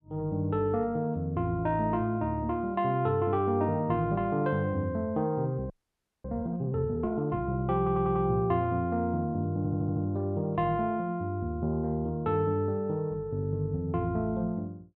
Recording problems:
audio freezing; at 5.5 s for 0.5 s
stutter; at 8 s and at 9.5 s

